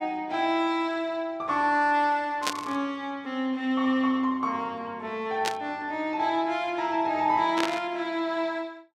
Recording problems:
burst of static; at 2.5 s, at 5.5 s and at 7.5 s; peak +3 dB vs average level

